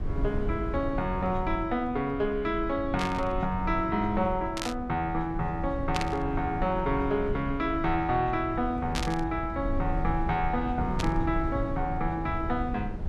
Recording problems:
low-frequency rumble; below 110 Hz, SNR 7 dB
burst of static; 5 times, first at 3 s; peak +2 dB vs average level

